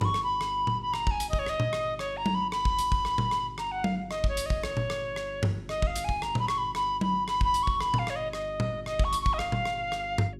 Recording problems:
hum; 50 Hz, harmonics up to 400 Hz, SNR 17 dB

